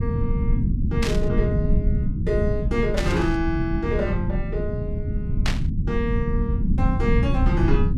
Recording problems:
rumble; below 150 Hz, SNR -3 dB
static burst; at 1 s, at 3 s and at 5.5 s; peak +4 dB vs average level

